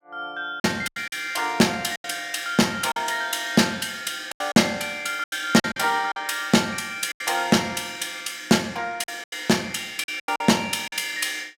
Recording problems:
lost packets; 9% of the sound replaced, filled with silence

